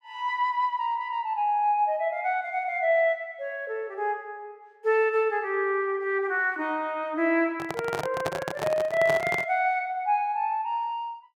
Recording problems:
handling noise; from 7.5 to 9.5 s; peak +1 dB vs average level

